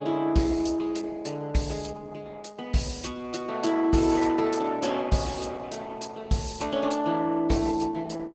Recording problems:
lossy codec; Opus, log-spectral distance 4 dB, nothing above 7.8 kHz

